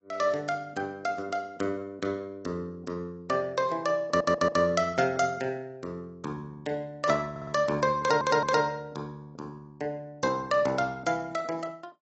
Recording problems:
lossy compression; AAC, log-spectral distance 2 dB, nothing above 7.1 kHz
audio stuttering; at 4 s, at 7.5 s and at 8 s

